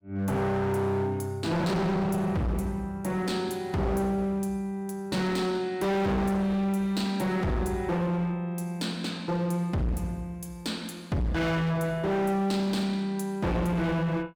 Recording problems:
distorted audio; hard clipping, signal-to-distortion ratio 6 dB

